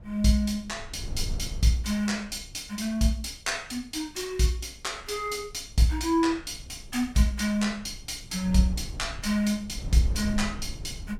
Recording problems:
wind on the microphone; below 100 Hz, SNR 12 dB

